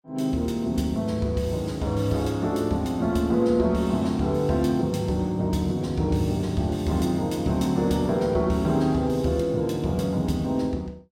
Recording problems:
none

